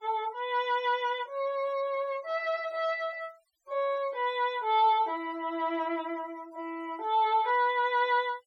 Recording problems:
denoising artefacts; signal-to-artefact ratio 26 dB

